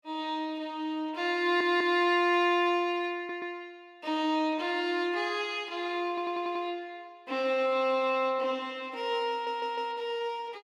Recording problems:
audio stuttering; 4 times, first at 1.5 s

